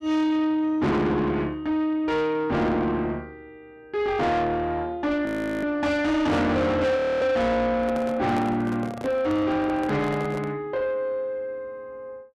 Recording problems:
distortion; soft clipping, signal-to-distortion ratio 7 dB
frozen audio; at 5.5 s and at 7 s
handling noise; from 7.5 to 11 s; peak -5 dB vs average level

